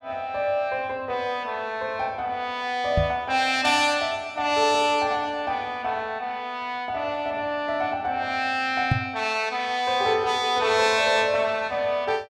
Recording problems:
microphone thump; at 3 s and at 9 s; peak +5 dB vs average level

